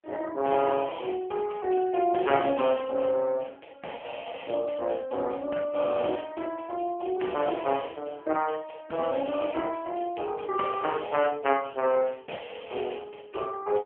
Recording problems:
telephone audio; 280 Hz to 3.1 kHz, AMR-NB

